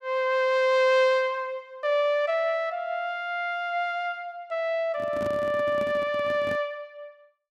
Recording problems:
handling noise; from 5 to 6.5 s; peak -7 dB vs average level

